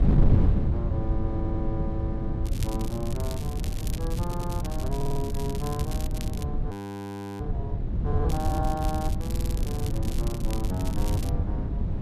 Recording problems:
wind on the microphone; below 130 Hz, SNR -7 dB
audio stuttering; 4 times, first at 1.5 s
crackling; from 2.5 to 6.5 s and from 8.5 to 11 s; loose cable, SNR 7 dB
frozen audio; at 6.5 s for 0.5 s

